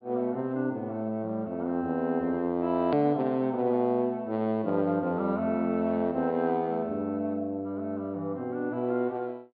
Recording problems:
low-pass filter; nothing above 4.9 kHz
click at an edit; at 3 s

